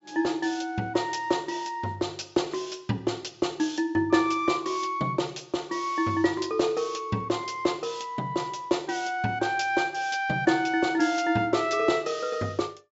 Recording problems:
treble cut off; nothing above 8 kHz

